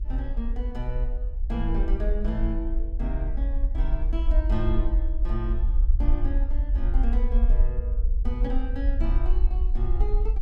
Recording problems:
hum; 50 Hz, harmonics up to 500 Hz, SNR 24 dB
rumble; below 48 Hz, SNR -8 dB

